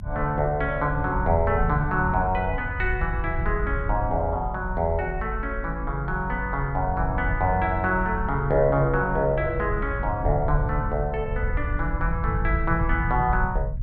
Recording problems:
rumble; below 84 Hz, SNR 5 dB

